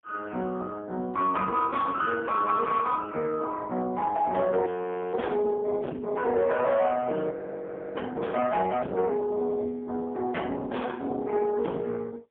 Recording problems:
telephone audio; 220 Hz to 3.4 kHz, AMR-NB, then MP3
distorted audio; soft clipping, signal-to-distortion ratio 10 dB
audio freezing; at 4.5 s and at 7.5 s for 0.5 s

